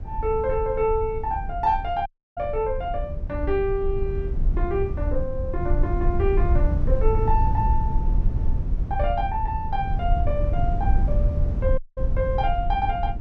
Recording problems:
low-frequency rumble; below 74 Hz, SNR 0 dB
audio cutting out; at 2 s and at 12 s

